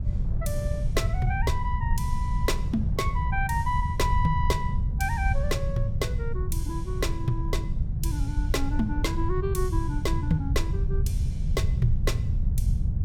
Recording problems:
low-frequency rumble; below 110 Hz, SNR -2 dB
wind on the microphone; below 400 Hz, SNR 18 dB

